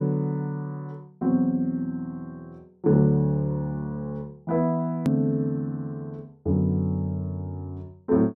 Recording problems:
hard cut with a click; at 5 s

